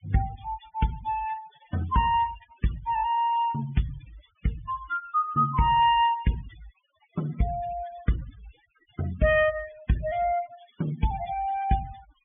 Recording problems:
treble cut off; nothing above 3.5 kHz
denoising artefacts; signal-to-artefact ratio 18 dB

